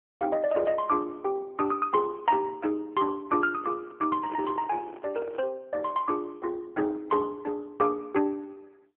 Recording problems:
phone line; 260 Hz to 2.7 kHz, AMR-NB
microphone handling noise; from 3.5 to 5.5 s; peak -7 dB vs average level

